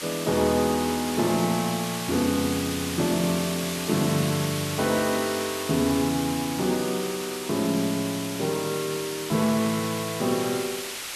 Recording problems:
background hiss; slope +1 dB per octave, SNR 6 dB

